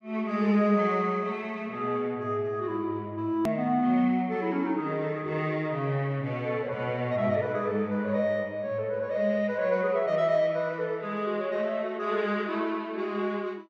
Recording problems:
hard cut with a click; at 3.5 s

